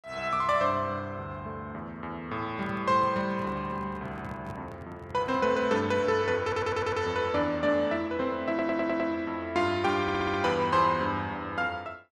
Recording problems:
microphone handling noise; from 2.5 to 5.5 s; peak -10 dB vs average level
audio stuttering; at 6.5 s, at 8.5 s and at 10 s

